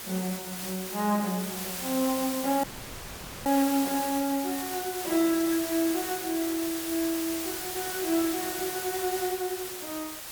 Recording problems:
background hiss; slope 0 dB per octave, SNR 4 dB
dropout; at 2.5 s for 1 s

